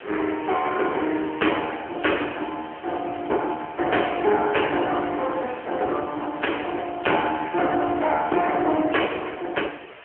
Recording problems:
phone line; 300 Hz to 3.2 kHz, AMR-NB
background hiss; SNR 19 dB

